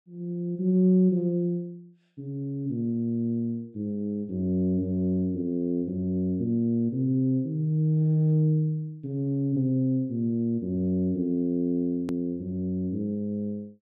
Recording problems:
edit click; at 12 s

